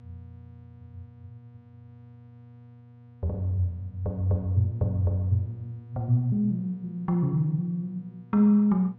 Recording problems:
electrical hum; 60 Hz, harmonics up to 960 Hz, SNR 23 dB

